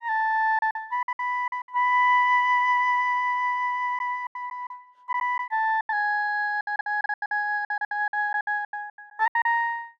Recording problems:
lost packets; 15% of the sound replaced, filled with silence

